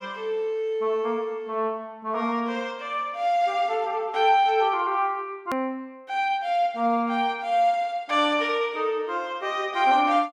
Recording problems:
click at an edit; at 5.5 s

